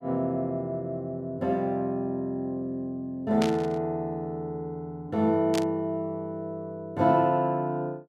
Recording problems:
static burst; at 3.5 s and at 5.5 s; peak -1 dB vs average level

